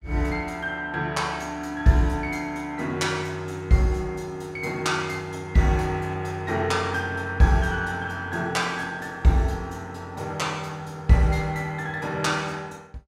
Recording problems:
none

